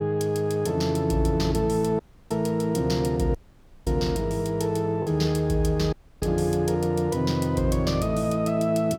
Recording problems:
lost packets; 0.5% of the sound replaced, filled with the last packet
dropout; at 2 s, at 3.5 s for 0.5 s and at 6 s

